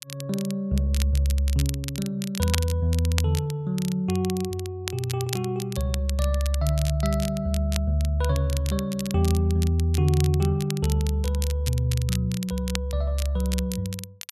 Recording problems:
crackle; vinyl, SNR 12 dB

